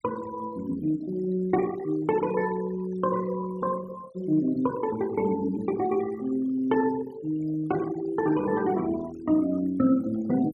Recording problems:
noise reduction artefacts; signal-to-artefact ratio 19 dB

